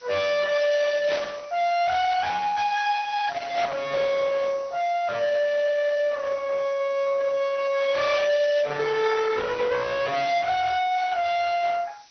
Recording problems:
low-pass filter; nothing above 6 kHz
codec artefacts; Opus, then AAC, log-spectral distance 4 dB
distorted audio; soft clipping, signal-to-distortion ratio 7 dB
hiss; slope +3 dB per octave, SNR 27 dB
burst of static; at 1 s; peak -2 dB vs average level

